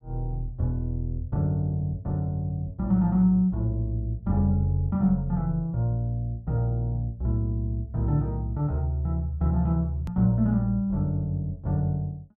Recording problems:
hard cut with a click; at 10 s

